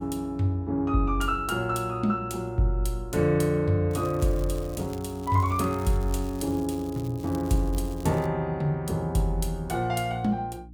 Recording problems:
electrical hum; 60 Hz, harmonics up to 300 Hz, SNR 20 dB
crackling; from 4 to 8.5 s; loose cable, SNR 22 dB

